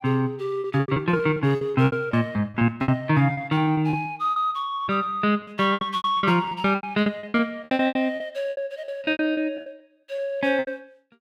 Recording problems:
packet loss; 20% of the sound replaced, filled with repeated pitch periods

